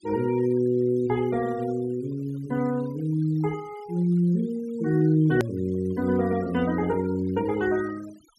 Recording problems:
noise reduction artefacts; signal-to-artefact ratio 23 dB
hard cut with a click; at 5.5 s

